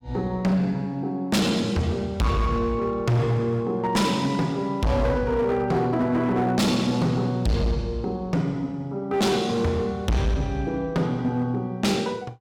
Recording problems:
distorted audio; hard clipping, signal-to-distortion ratio 6 dB

